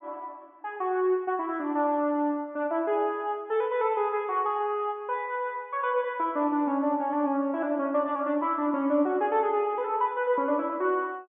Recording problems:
treble missing; nothing above 3.6 kHz

